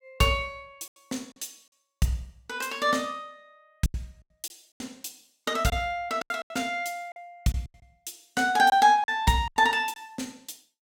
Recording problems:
lost packets; 9% of the sound replaced, filled with silence

